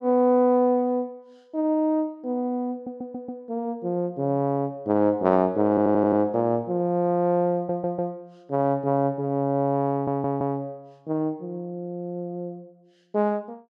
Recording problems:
stutter; 4 times, first at 2.5 s

